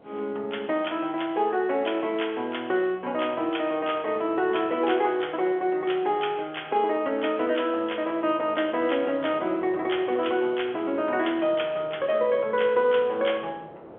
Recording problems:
telephone audio; 320 Hz to 3.3 kHz, G.711
wind noise; below 710 Hz, SNR 21 dB

